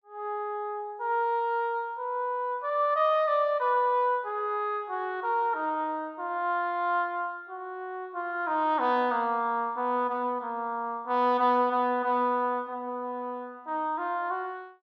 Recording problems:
none

